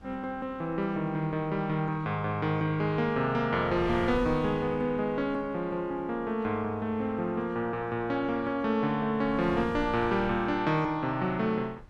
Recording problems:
wind on the microphone; below 190 Hz, SNR 19 dB

